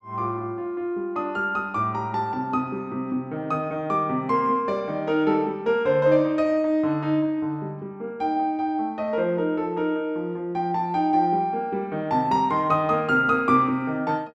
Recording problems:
none

